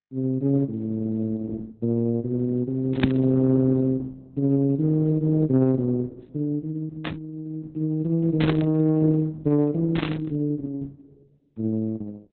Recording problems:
lossy codec; Opus, log-spectral distance 2 dB
burst of static; 4 times, first at 3 s; peak -3 dB vs average level

